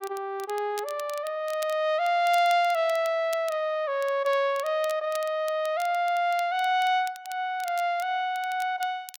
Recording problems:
crackling; vinyl, SNR 20 dB

